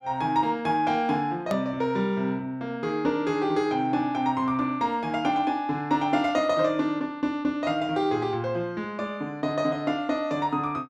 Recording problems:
edit click; at 1.5 s

